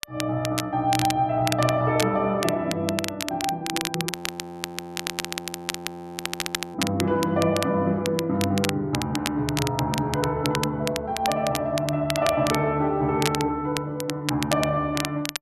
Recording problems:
crackle; vinyl, SNR 7 dB
frozen audio; at 4 s for 2.5 s

